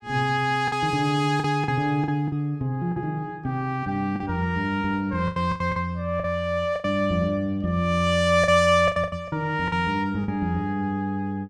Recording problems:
lost packets; 8% of the sound replaced, filled with the last packet

